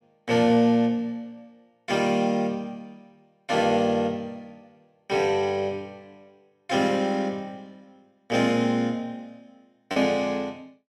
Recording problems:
packet loss; 0.5% of the sound replaced, filled with repeated pitch periods

